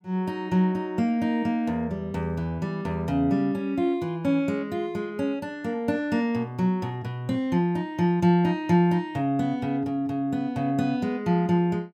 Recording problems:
none

